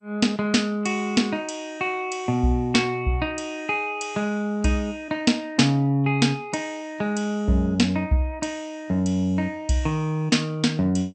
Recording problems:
codec artefacts; MP2, log-spectral distance 2 dB, nothing above 8.5 kHz

